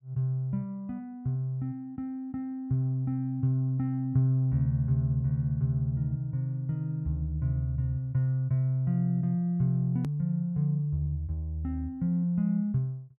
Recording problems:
edit click; at 10 s

